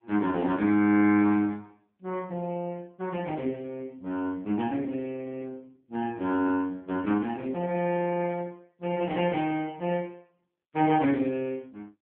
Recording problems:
phone line; 110 Hz to 3.3 kHz, AMR-NB

